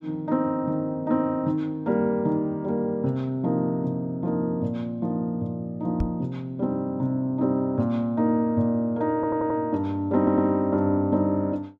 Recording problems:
microphone bump; at 6 s; peak +2 dB vs average level
audio stuttering; at 9 s and at 10 s

